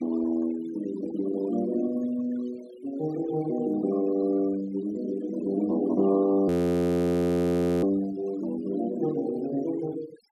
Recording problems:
denoising artefacts; signal-to-artefact ratio 18 dB
audio freezing; at 6.5 s for 1.5 s

